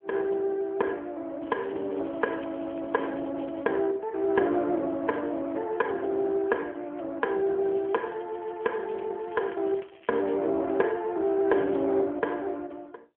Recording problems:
telephone audio; 240 Hz to 2.8 kHz, AMR-NB
crackling; from 1.5 to 3.5 s, from 7.5 to 10 s and at 12 s; loose cable, SNR 27 dB

